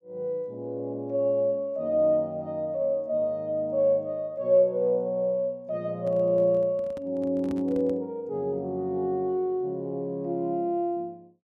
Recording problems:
handling noise; from 6 to 8 s; peak -8 dB vs average level

